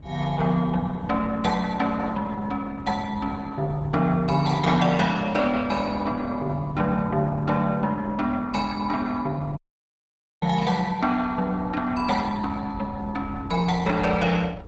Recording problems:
codec artefacts; Opus, log-spectral distance 4 dB, nothing above 7.6 kHz
wind noise; below 190 Hz, SNR 14 dB
dropout; at 9.5 s for 1 s

